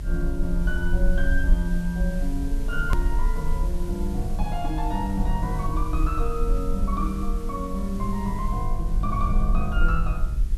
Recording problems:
electrical hum; 50 Hz, harmonics up to 400 Hz, SNR 18 dB
hiss; slope -2 dB per octave, SNR 18 dB
low-frequency rumble; below 46 Hz, SNR -1 dB
edit click; at 3 s

